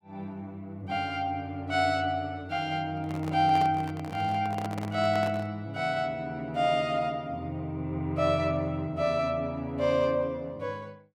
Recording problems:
microphone handling noise; from 3 to 5.5 s; peak -4 dB vs average level

